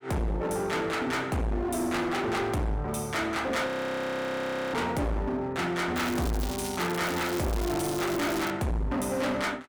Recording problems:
distortion; hard clipping, uneven, signal-to-distortion ratio 6 dB
frozen audio; at 3.5 s for 1 s
crackling; from 6 to 8.5 s; loose cable, SNR 9 dB

